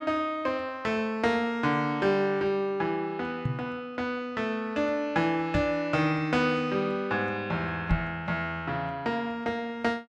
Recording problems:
microphone thump; at 3.5 s, at 5.5 s and at 8 s; peak +4 dB vs average level

